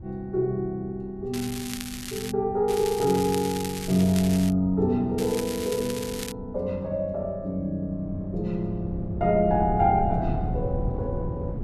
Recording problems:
wind noise; below 150 Hz, SNR 11 dB
crackle; at 1.5 s, from 2.5 to 4.5 s and from 5 to 6.5 s; loose cable, SNR 10 dB

